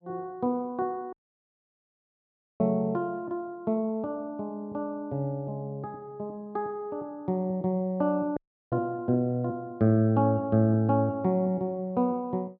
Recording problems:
audio cutting out; at 1 s for 1.5 s and at 8.5 s

